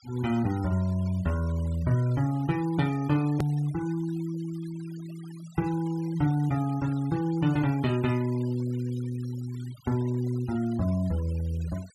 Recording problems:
denoising artefacts; signal-to-artefact ratio 21 dB
edit click; at 3.5 s

